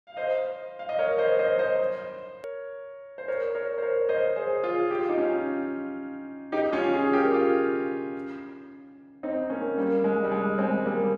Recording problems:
edit click; at 2.5 s

